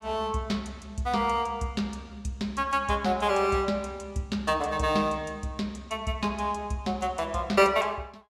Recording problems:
none

